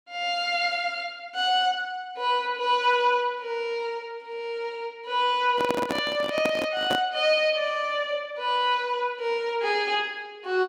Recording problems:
handling noise; from 5.5 to 7 s; peak +1 dB vs average level

